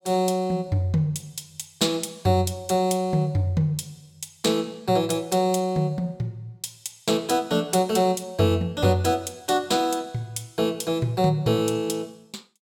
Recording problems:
none

